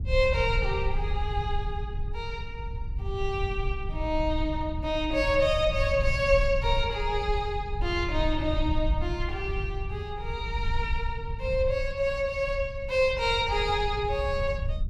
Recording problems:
low-frequency rumble; below 78 Hz, SNR 5 dB

